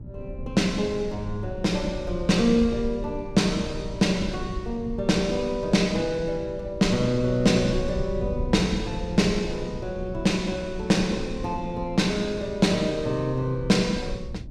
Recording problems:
electrical hum; 60 Hz, harmonics up to 660 Hz, SNR 22 dB
low-frequency rumble; below 110 Hz, SNR 13 dB

